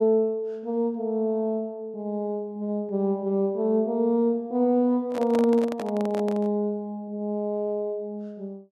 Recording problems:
handling noise; from 5 to 6.5 s; peak -4 dB vs average level

